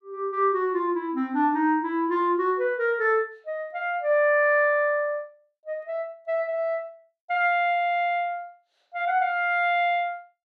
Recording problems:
none

